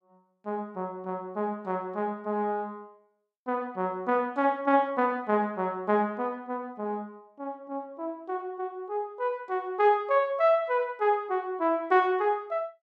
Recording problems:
none

